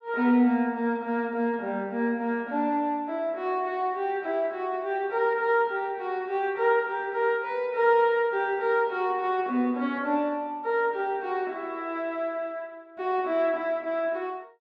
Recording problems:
none

